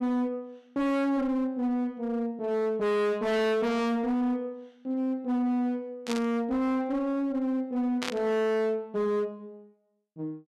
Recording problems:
distortion; hard clipping, uneven, signal-to-distortion ratio 6 dB
burst of static; at 6 s and at 8 s; peak 0 dB vs average level

